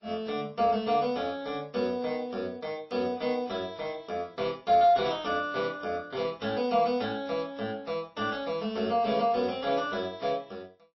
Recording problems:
lossy compression; MP3, then AAC, log-spectral distance 3 dB, nothing above 5.7 kHz

